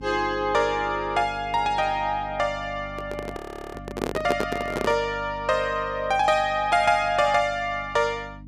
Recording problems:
electrical hum; 50 Hz, harmonics up to 300 Hz, SNR 18 dB
handling noise; from 3 to 5 s; peak +2 dB vs average level
frozen audio; at 3.5 s

